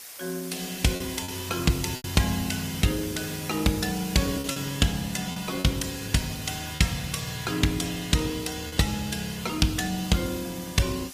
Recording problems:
codec artefacts; Opus, log-spectral distance 8 dB, nothing above 15.1 kHz
background hiss; slope +2 dB per octave, SNR 12 dB
lost packets; 4% of the sound replaced, filled with repeated pitch periods

